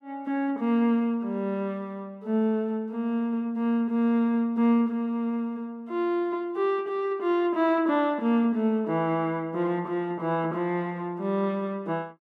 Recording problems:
none

